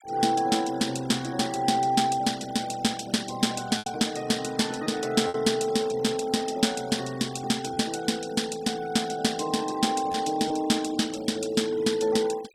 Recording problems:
denoising artefacts; signal-to-artefact ratio 19 dB
packet loss; 1.8% of the sound replaced, filled with repeated pitch periods

